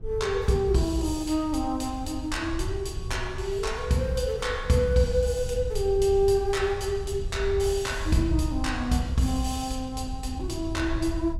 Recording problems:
wind noise; below 88 Hz, SNR 9 dB

